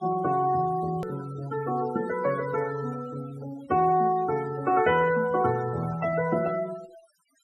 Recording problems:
noise reduction artefacts; signal-to-artefact ratio 17 dB
edit click; at 1 s

